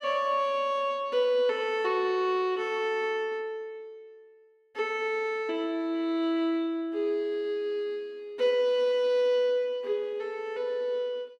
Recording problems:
none

